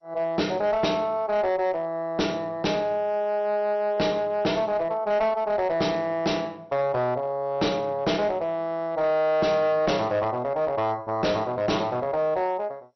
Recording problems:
lossy compression; MP2, log-spectral distance 2 dB, nothing above 5.8 kHz
distortion; hard clipping, uneven, signal-to-distortion ratio 11 dB

